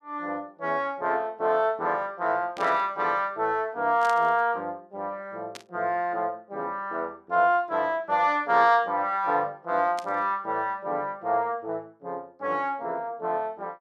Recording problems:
burst of static; 4 times, first at 2.5 s; peak -9 dB vs average level

